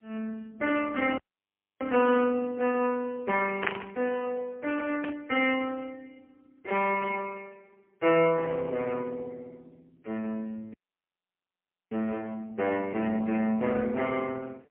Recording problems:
telephone audio; 280 Hz to 3.2 kHz, AMR-NB, then MP3
audio cutting out; at 1 s for 0.5 s and at 11 s for 1 s
static burst; at 3.5 s and at 5 s; peak +6 dB vs average level

